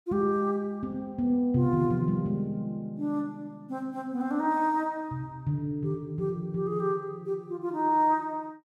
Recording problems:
none

